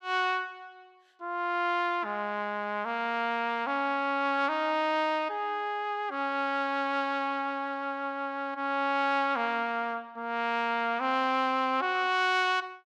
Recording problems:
none

